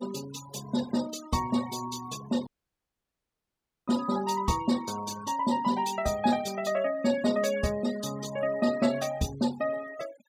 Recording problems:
denoising artefacts; signal-to-artefact ratio 15 dB
dropout; at 2.5 s for 1.5 s

